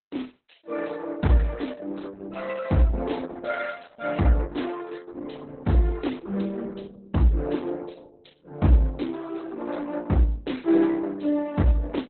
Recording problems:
lossy compression; Opus, then Opus, log-spectral distance 5 dB, nothing above 4 kHz

